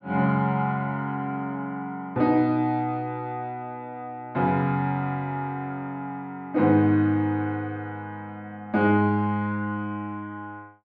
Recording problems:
none

